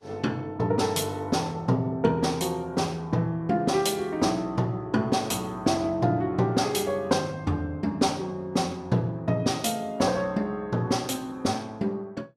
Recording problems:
lossy compression; Vorbis, log-spectral distance 2 dB, nothing above 12.7 kHz

